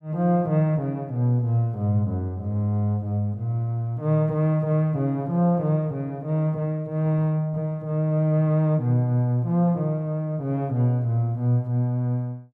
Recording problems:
none

